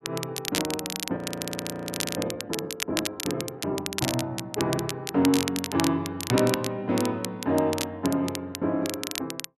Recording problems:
crackling; vinyl, SNR 5 dB
audio freezing; at 1 s for 1 s

